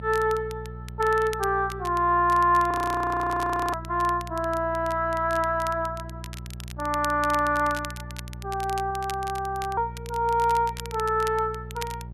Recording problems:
hum; 60 Hz, harmonics up to 600 Hz, SNR 14 dB
crackle; vinyl, SNR 18 dB
frozen audio; at 2.5 s for 1 s and at 9 s for 1 s

